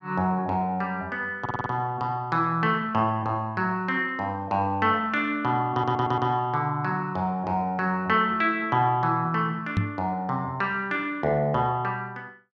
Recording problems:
audio stuttering; at 1.5 s and at 5.5 s
microphone thump; at 10 s; peak +4 dB vs average level

